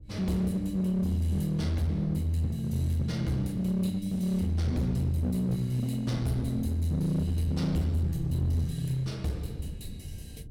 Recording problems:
distorted audio; hard clipping, uneven, signal-to-distortion ratio 11 dB
wind on the microphone; below 150 Hz, SNR 16 dB

